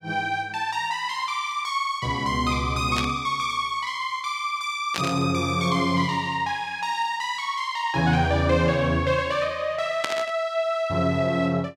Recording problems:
static burst; at 3 s, at 5 s and at 10 s; peak +2 dB vs average level

